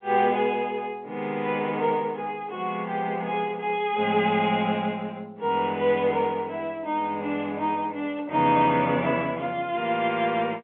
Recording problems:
phone line; 190 Hz to 3.4 kHz, G.711

